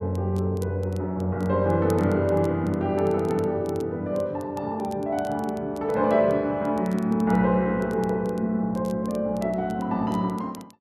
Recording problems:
crackling; vinyl, SNR 27 dB

